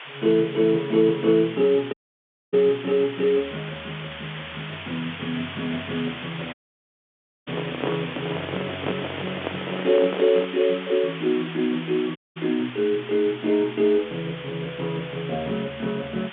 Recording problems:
telephone audio; 220 Hz to 3.6 kHz, G.711
hiss; SNR 12 dB
audio cutting out; at 2 s for 0.5 s, at 6.5 s for 1 s and at 12 s
handling noise; from 6.5 to 11 s; peak 0 dB vs average level

